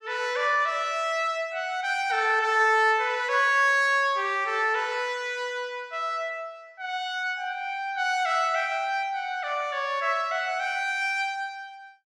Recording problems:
none

